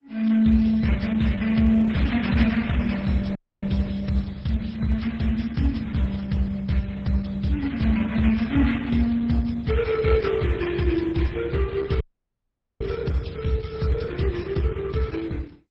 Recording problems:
lossy compression; MP3, then Opus, log-spectral distance 4 dB, nothing above 7.8 kHz
dropout; at 3.5 s and at 12 s for 1 s

